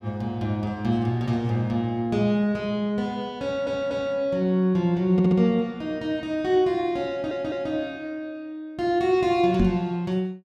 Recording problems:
stutter; at 3.5 s, at 5 s and at 7 s
knock on the microphone; at 9.5 s; peak +4 dB vs average level

